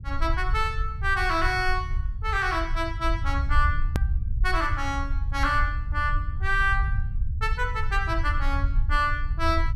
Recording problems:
low-frequency rumble; below 72 Hz, SNR 2 dB
edit click; at 4 s

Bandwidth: 14.5 kHz